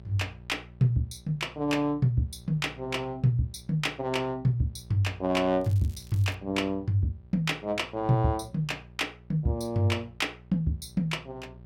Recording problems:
hum; 60 Hz, harmonics up to 780 Hz, SNR 21 dB
crackling; at 5.5 s; loose cable, SNR 25 dB

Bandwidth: 16.5 kHz